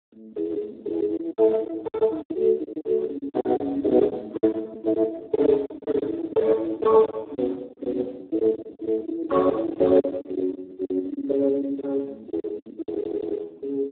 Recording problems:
phone line; 240 Hz to 2.2 kHz, Speex
packet loss; 15% of the sound replaced, filled with silence
stutter; at 13 s

